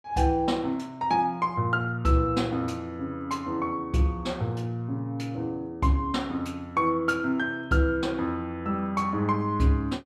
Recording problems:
none

